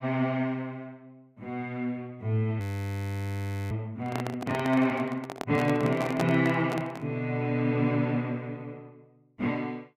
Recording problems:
frozen audio; at 2.5 s for 1 s
microphone handling noise; from 4 to 7 s; peak +3 dB vs average level

